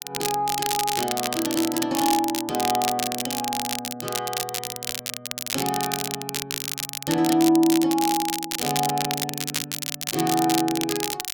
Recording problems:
crackling; vinyl, SNR 3 dB

